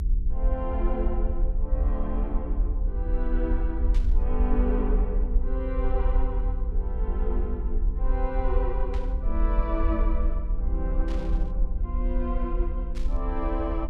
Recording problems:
hum; 60 Hz, harmonics up to 480 Hz, SNR 8 dB
low-frequency rumble; below 48 Hz, strongest tone 38 Hz, SNR -5 dB
burst of static; 4 times, first at 4 s; peak -7 dB vs average level

